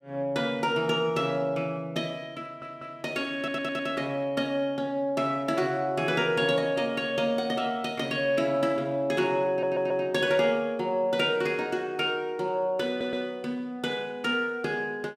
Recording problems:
stutter; 4 times, first at 2.5 s

